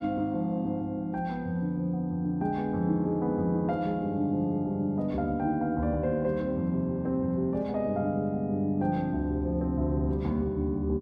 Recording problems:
none

